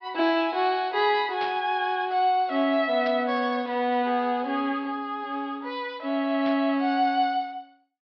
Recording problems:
treble missing; nothing above 5.5 kHz
static burst; at 1.5 s, at 3 s and at 6.5 s; peak -8 dB vs average level

